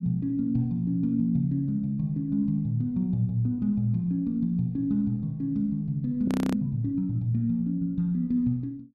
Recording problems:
audio freezing; at 6.5 s

